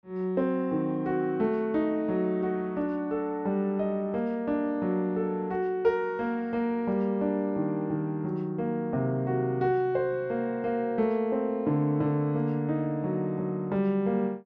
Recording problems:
none

